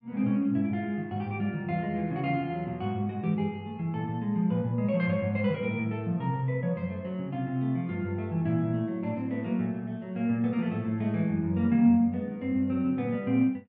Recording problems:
none

